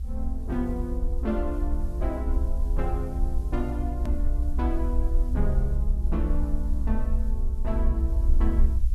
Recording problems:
background hiss; slope -1 dB per octave, SNR 26 dB
rumble; below 62 Hz, SNR -5 dB
edit click; at 4 s

